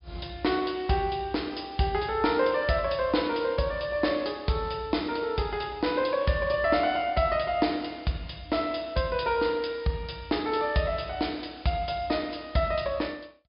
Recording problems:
treble cut off; nothing above 5.5 kHz

